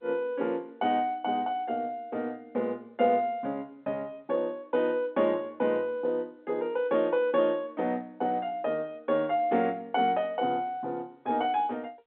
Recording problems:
telephone audio; 260 Hz to 3.7 kHz, G.711

